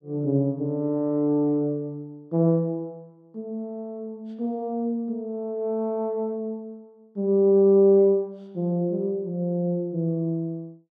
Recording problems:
none

